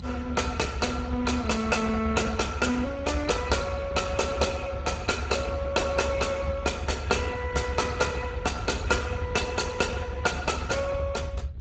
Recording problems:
lossy compression; Speex, log-spectral distance 3 dB, nothing above 7.6 kHz
low-frequency rumble; below 98 Hz, strongest tone 70 Hz, SNR 8 dB

